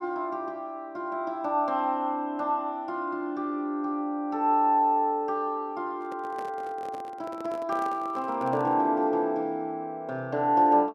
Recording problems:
microphone handling noise; from 6 to 9 s; peak -9 dB vs average level

